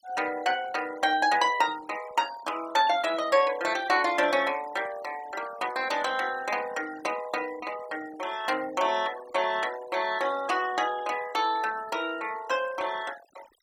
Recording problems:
noise reduction artefacts; signal-to-artefact ratio 17 dB

